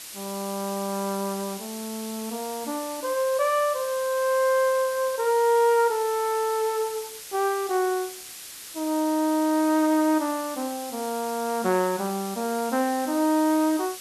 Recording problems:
hiss; SNR 12 dB

